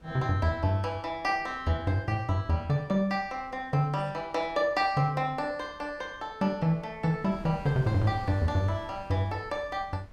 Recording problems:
wind noise; below 280 Hz, SNR 20 dB

